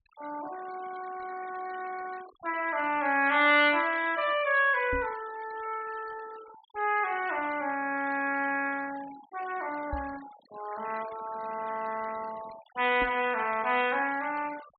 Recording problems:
treble cut off; nothing above 4.6 kHz
noise reduction artefacts; signal-to-artefact ratio 19 dB
microphone thump; at 5 s, at 10 s and at 13 s; peak -3 dB vs average level

